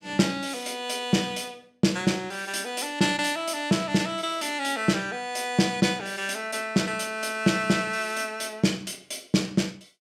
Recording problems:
none

